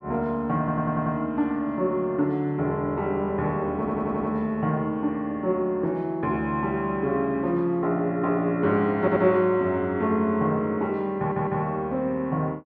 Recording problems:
stutter; 4 times, first at 0.5 s

